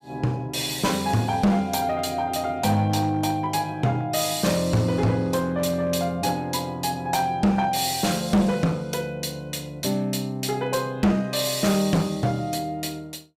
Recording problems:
distortion; hard clipping, uneven, signal-to-distortion ratio 10 dB

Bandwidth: 15.5 kHz